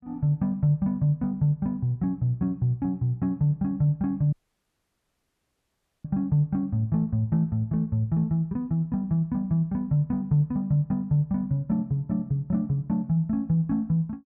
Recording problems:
audio cutting out; at 4.5 s for 1.5 s

